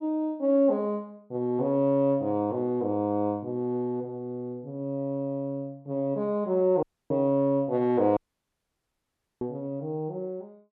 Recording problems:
audio cutting out; at 7 s and at 8 s for 1 s

